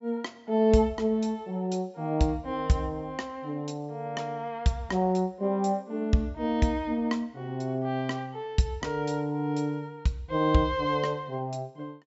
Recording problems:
treble missing; nothing above 8 kHz

